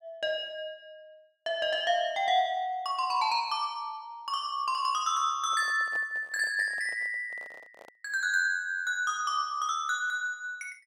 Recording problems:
microphone handling noise; from 5.5 to 8 s; peak -13 dB vs average level

